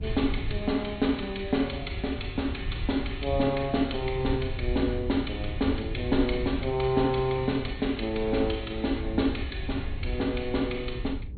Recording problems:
treble missing; nothing above 4.4 kHz
hum; 60 Hz, harmonics up to 480 Hz, SNR 23 dB
wind noise; below 94 Hz, SNR 8 dB

